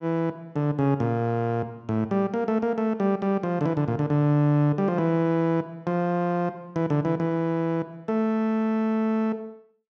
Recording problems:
none

